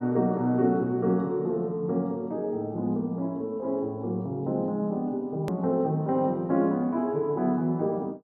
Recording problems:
hard cut with a click; at 5.5 s

